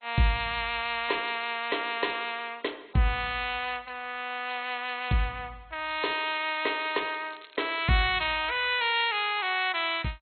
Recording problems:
lossy compression; MP2, log-spectral distance 9 dB, nothing above 4.1 kHz
crackling; from 6 to 8.5 s; loose cable, SNR 21 dB

